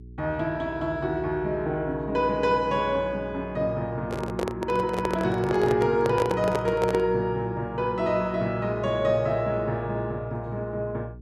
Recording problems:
electrical hum; 60 Hz, harmonics up to 420 Hz, SNR 18 dB
microphone handling noise; from 4 to 7 s; peak +2 dB vs average level

